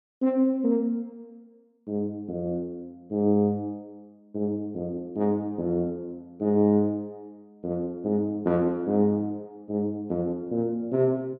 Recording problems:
none

